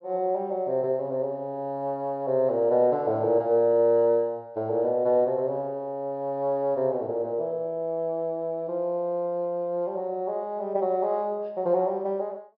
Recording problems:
low-pass filter; nothing above 5.5 kHz

